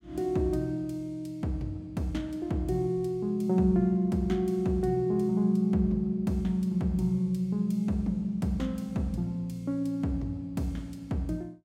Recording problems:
none

